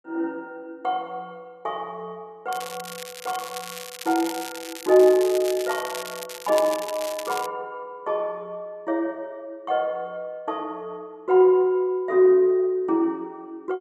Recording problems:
crackling; from 2.5 to 7.5 s; loose cable, SNR 13 dB

